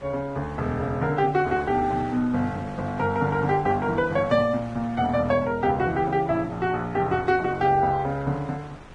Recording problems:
codec artefacts; Vorbis, log-spectral distance 2 dB
wind noise; below 1.4 kHz, SNR 19 dB

